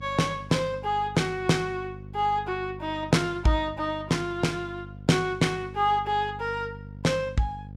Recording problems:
hum; 50 Hz, harmonics up to 550 Hz, SNR 15 dB

